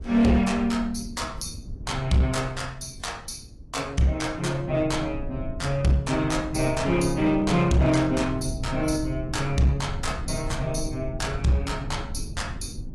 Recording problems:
lossy codec; AAC, log-spectral distance 3 dB, nothing above 11.3 kHz
distorted audio; hard clipping, uneven, signal-to-distortion ratio 11 dB
low-frequency rumble; below 120 Hz, SNR 11 dB

